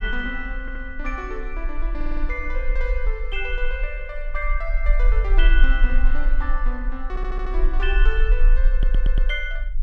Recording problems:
rumble; below 38 Hz, strongest tone 26 Hz, SNR -5 dB
audio stuttering; 4 times, first at 0.5 s

